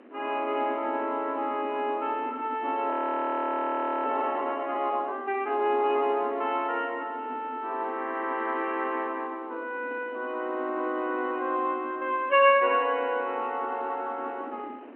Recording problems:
phone line; 240 Hz to 3.3 kHz, G.711
wind noise; below 570 Hz, SNR 17 dB
audio freezing; at 3 s for 1 s

